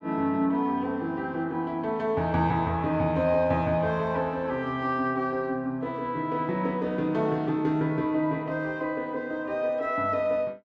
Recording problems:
none

